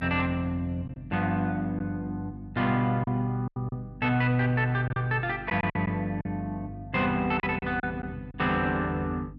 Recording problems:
hum; 50 Hz, harmonics up to 300 Hz, SNR 17 dB
lost packets; 5% of the sound replaced, filled with silence

